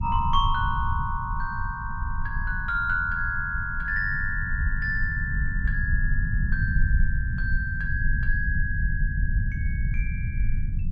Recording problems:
rumble; below 82 Hz, SNR 0 dB

